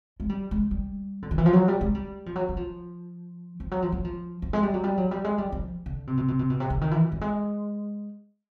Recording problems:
audio stuttering; at 6 s

